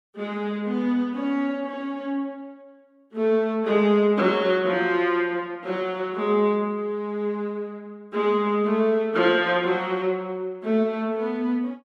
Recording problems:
none

